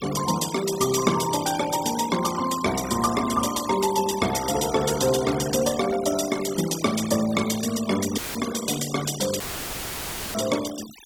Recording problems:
denoising artefacts; signal-to-artefact ratio 11 dB
audio cutting out; at 8 s and at 9.5 s for 1 s; filled with static

